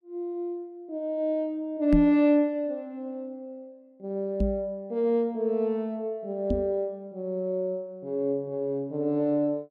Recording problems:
knock on the microphone; at 2 s, at 4.5 s and at 6.5 s; peak +5 dB vs average level

